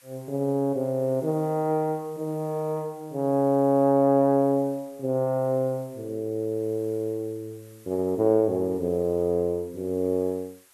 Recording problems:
background hiss; slope 0 dB per octave, SNR 28 dB

